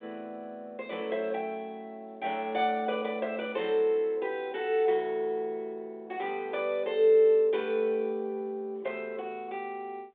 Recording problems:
phone line; 320 Hz to 3.7 kHz, G.726

